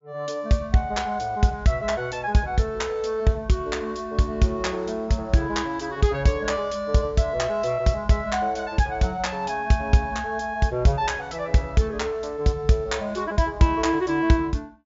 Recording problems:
treble missing; nothing above 7.4 kHz

